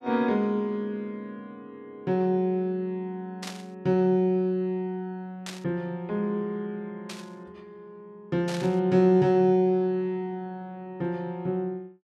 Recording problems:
burst of static; 4 times, first at 3.5 s; peak -6 dB vs average level

